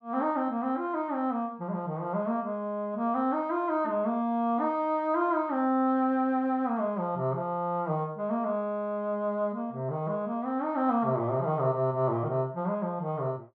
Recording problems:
none

